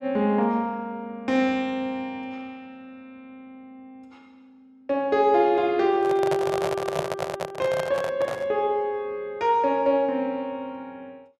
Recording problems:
handling noise; from 6 to 8.5 s; peak +1 dB vs average level

